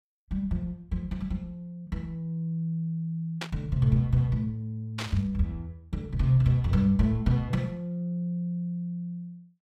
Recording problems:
static burst; at 3.5 s and at 5 s; peak -2 dB vs average level

